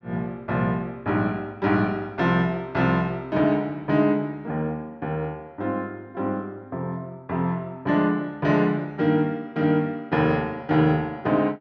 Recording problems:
none

